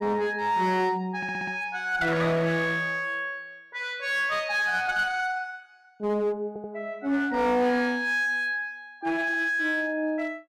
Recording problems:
distortion; hard clipping, uneven, signal-to-distortion ratio 10 dB
audio stuttering; at 1 s and at 6.5 s

